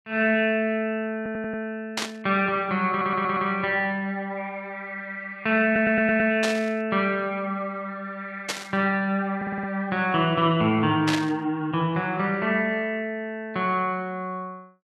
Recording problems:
stutter; 4 times, first at 1 s
burst of static; 4 times, first at 2 s; peak +2 dB vs average level

